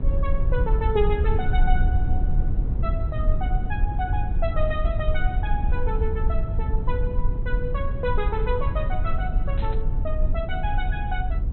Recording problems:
treble missing; nothing above 4.1 kHz
hum; 50 Hz, harmonics up to 550 Hz, SNR 22 dB
rumble; below 68 Hz, SNR -5 dB
burst of static; at 9.5 s; peak -9 dB vs average level

